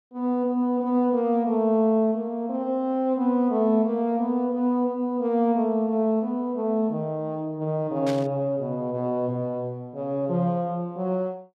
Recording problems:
burst of static; at 8 s; peak -8 dB vs average level

